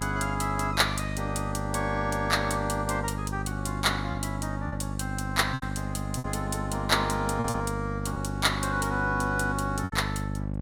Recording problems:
hum; 50 Hz, harmonics up to 850 Hz, SNR 4 dB
lost packets; 4% of the sound replaced, filled with repeated pitch periods

